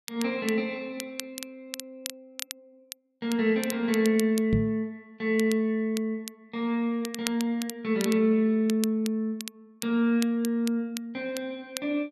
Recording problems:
crackling; vinyl, SNR 13 dB
knock on the microphone; at 4.5 s; peak +5 dB vs average level

